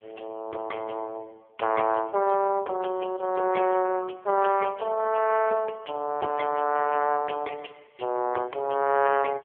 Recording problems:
phone line; 320 Hz to 2.1 kHz, AMR-NB

